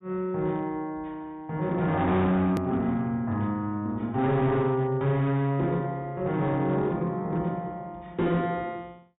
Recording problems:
treble missing; nothing above 4 kHz
distorted audio; hard clipping, signal-to-distortion ratio 11 dB
edit click; at 2.5 s

